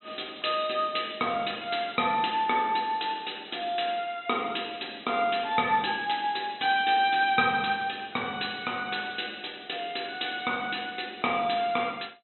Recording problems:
treble cut off; nothing above 4 kHz

